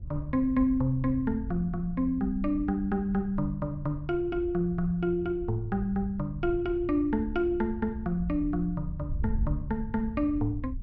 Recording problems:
wind on the microphone; below 84 Hz, SNR 10 dB

